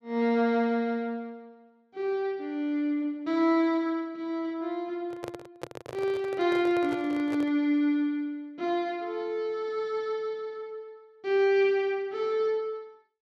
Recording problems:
microphone handling noise; from 5 to 7.5 s; peak -5 dB vs average level

